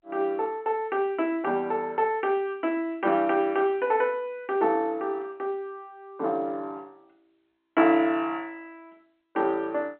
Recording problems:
telephone audio; 220 Hz to 3.6 kHz, G.711

